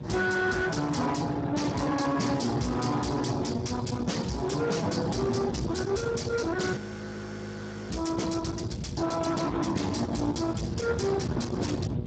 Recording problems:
codec artefacts; Speex, log-spectral distance 5 dB, nothing above 7.6 kHz
distortion; soft clipping, signal-to-distortion ratio 7 dB
electrical hum; 60 Hz, harmonics up to 1.7 kHz, SNR 14 dB
rumble; below 390 Hz, SNR 7 dB
audio freezing; at 7 s for 1 s

